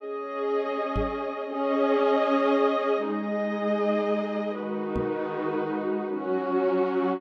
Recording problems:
microphone bump; at 1 s and at 5 s; peak -1 dB vs average level

